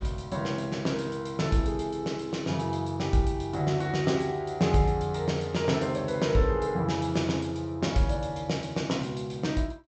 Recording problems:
treble missing; nothing above 8 kHz

